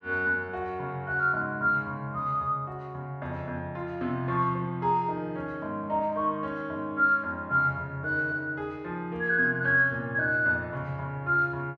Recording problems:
none

